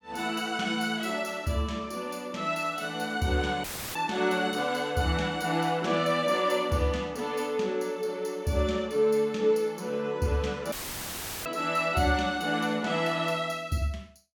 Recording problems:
audio cutting out; at 3.5 s and at 11 s for 0.5 s; filled with static

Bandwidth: 18 kHz